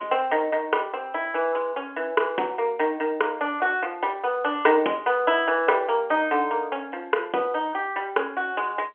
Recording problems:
telephone audio; 280 Hz to 3.3 kHz, G.711

